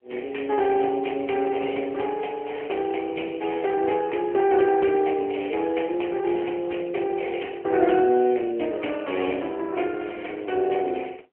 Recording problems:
telephone audio; 260 Hz to 3.1 kHz, AMR-NB

